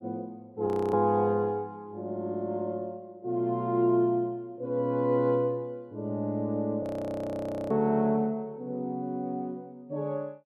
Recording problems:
frozen audio; at 0.5 s and at 7 s for 1 s

